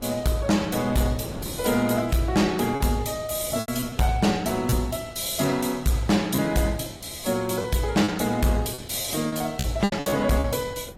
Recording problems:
codec artefacts; AAC, log-spectral distance 5 dB
distorted audio; hard clipping, uneven, signal-to-distortion ratio 11 dB
wind noise; below 430 Hz, SNR 20 dB
packet loss; 6% of the sound replaced, filled with repeated pitch periods

